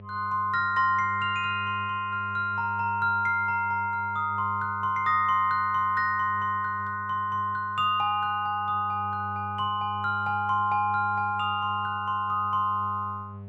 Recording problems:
electrical hum; 50 Hz, harmonics up to 700 Hz, SNR 16 dB

